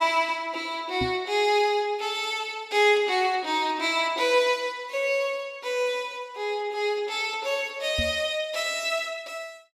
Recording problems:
knock on the microphone; at 1 s and at 8 s; peak -2 dB vs average level

